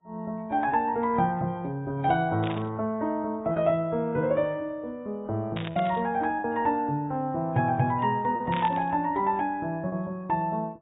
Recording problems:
lossy compression; AAC, log-spectral distance 2 dB, nothing above 3.2 kHz
lost packets; 2% of the sound replaced, filled with repeated pitch periods
burst of static; at 2.5 s, at 5.5 s and at 8.5 s; peak -4 dB vs average level

